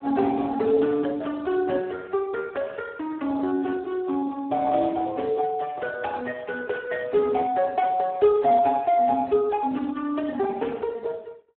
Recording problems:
phone line; 240 Hz to 3 kHz, Speex

